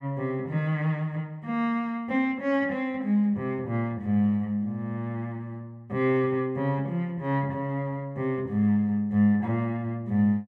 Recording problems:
none

